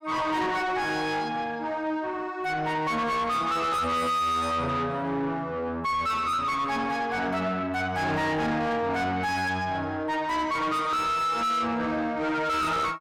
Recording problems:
distorted audio; soft clipping, signal-to-distortion ratio 6 dB

